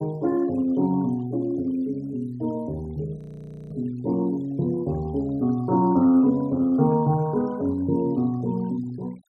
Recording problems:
noise reduction artefacts; signal-to-artefact ratio 26 dB
frozen audio; at 3 s for 0.5 s

